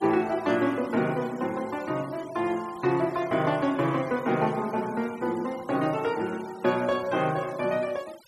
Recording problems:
noise reduction artefacts; signal-to-artefact ratio 20 dB

